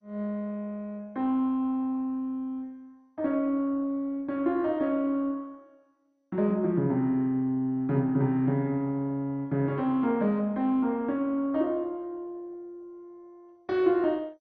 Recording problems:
codec artefacts; MP2, log-spectral distance 2 dB

